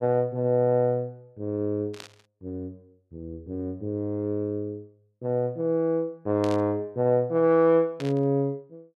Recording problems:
static burst; at 2 s, at 6.5 s and at 8 s; peak -10 dB vs average level

